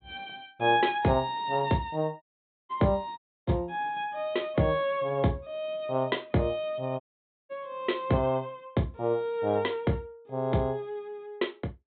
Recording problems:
low-pass filter; nothing above 4 kHz
audio cutting out; at 2 s, at 3 s and at 7 s

